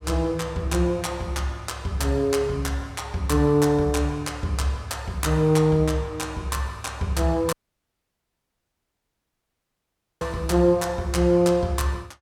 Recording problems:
audio cutting out; at 7.5 s for 2.5 s

